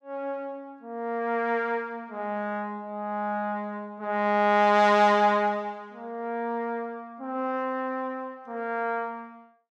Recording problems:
none

